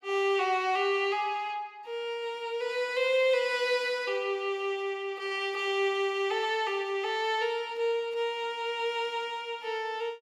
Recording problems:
none

